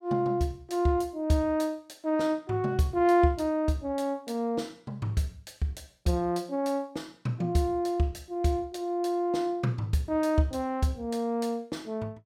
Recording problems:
none

